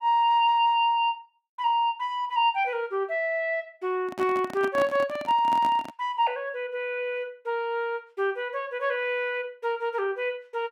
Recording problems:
microphone handling noise; from 4 to 6 s; peak -4 dB vs average level

